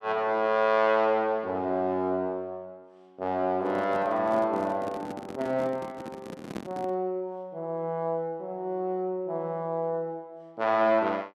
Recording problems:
microphone handling noise; from 3.5 to 7 s; peak -4 dB vs average level

